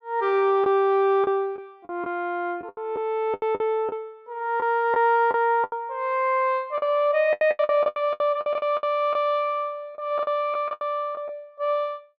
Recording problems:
packet loss; 12% of the sound replaced, filled with the last packet

